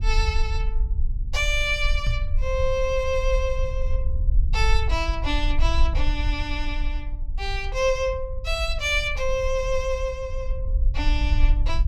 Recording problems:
low-frequency rumble; below 54 Hz, SNR 1 dB
knock on the microphone; at 2 s; peak +3 dB vs average level

